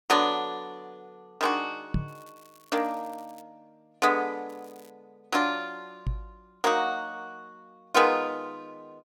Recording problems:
knock on the microphone; at 2 s and at 6 s; peak +2 dB vs average level
crackling; from 2 to 3.5 s and at 4.5 s; loose cable, SNR 29 dB

